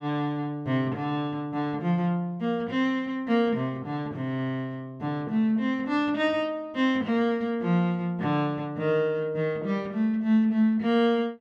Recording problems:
none

